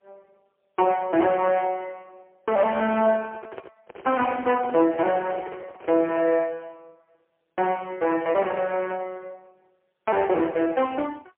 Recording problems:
telephone audio; 280 Hz to 3.3 kHz, AMR-NB, then MP3
handling noise; from 2.5 to 6.5 s; peak -9 dB vs average level

